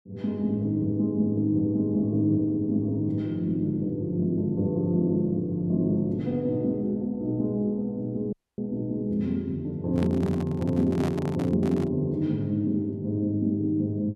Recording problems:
audio cutting out; at 8.5 s
handling noise; from 10 to 12 s; peak -5 dB vs average level

